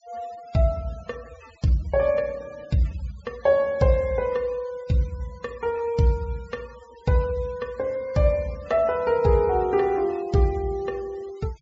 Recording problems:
treble cut off; nothing above 8 kHz
noise reduction artefacts; signal-to-artefact ratio 25 dB

